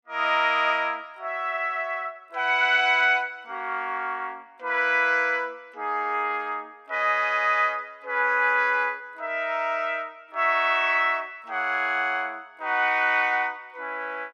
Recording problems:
none

